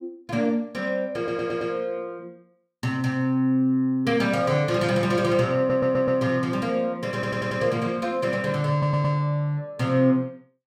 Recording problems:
audio stuttering; 4 times, first at 1 s

